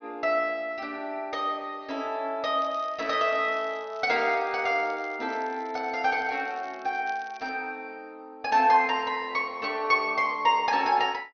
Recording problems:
treble cut off; nothing above 6.3 kHz
crackling; from 2.5 to 7.5 s; loose cable, SNR 27 dB

